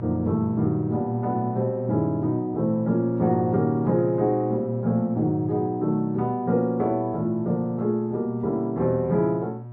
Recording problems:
hum; 60 Hz, harmonics up to 960 Hz, SNR 11 dB

